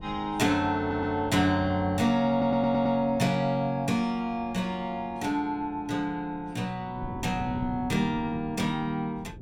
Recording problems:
wind on the microphone; below 250 Hz, SNR 17 dB
audio stuttering; at 1 s and at 2.5 s

